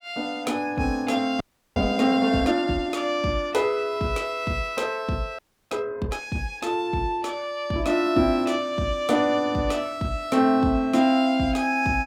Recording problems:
frozen audio; at 1.5 s and at 5.5 s

